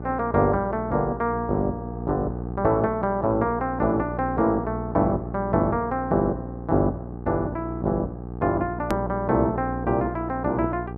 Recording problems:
hum; 60 Hz, harmonics up to 900 Hz, SNR 9 dB
click at an edit; at 9 s

